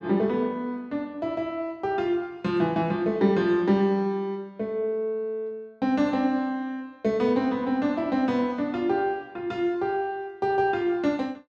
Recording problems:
none

